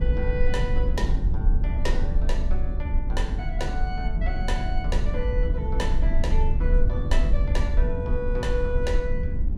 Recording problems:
low-frequency rumble; below 60 Hz, SNR -6 dB

